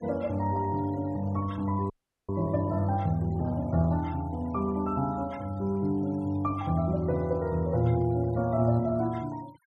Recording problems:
noise reduction artefacts; signal-to-artefact ratio 26 dB
audio freezing; at 2 s

